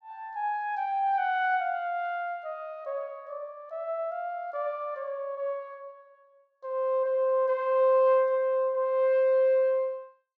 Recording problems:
none

